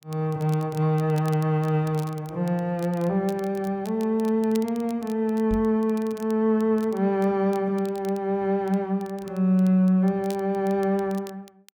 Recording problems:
crackle; vinyl, SNR 25 dB
microphone bump; at 5.5 s; peak -4 dB vs average level

